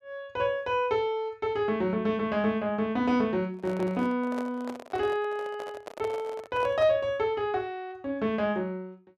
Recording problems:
microphone handling noise; from 3.5 to 7 s; peak -6 dB vs average level

